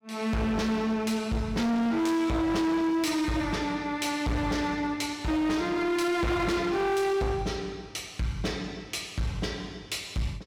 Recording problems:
distortion; hard clipping, signal-to-distortion ratio 8 dB

